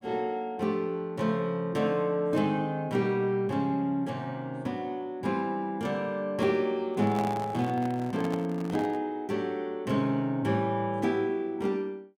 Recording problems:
handling noise; from 7 to 9 s; peak -4 dB vs average level

